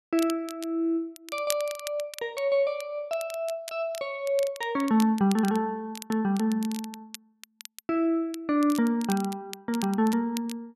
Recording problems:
crackling; vinyl, SNR 14 dB

